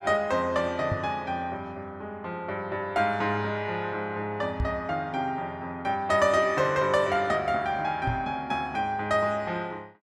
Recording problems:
microphone thump; at 1 s, at 4.5 s and at 8 s; peak +1 dB vs average level

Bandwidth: 14.5 kHz